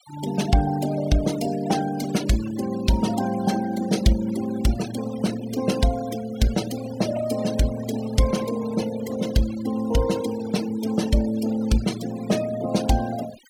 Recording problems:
noise reduction artefacts; signal-to-artefact ratio 15 dB

